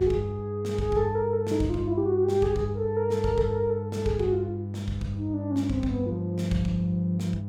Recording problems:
hum; 50 Hz, harmonics up to 500 Hz, SNR 7 dB

